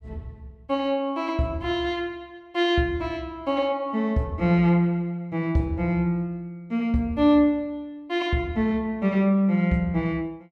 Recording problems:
none

